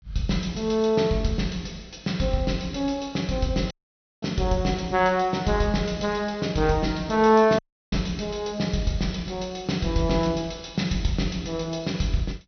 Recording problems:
treble cut off; nothing above 6.1 kHz
audio cutting out; at 3.5 s for 0.5 s and at 7.5 s

